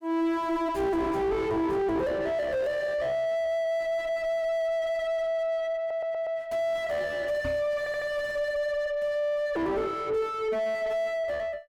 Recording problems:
distorted audio; soft clipping, signal-to-distortion ratio 4 dB
audio stuttering; at 6 s and at 8 s
knock on the microphone; at 7.5 s; peak +4 dB vs average level

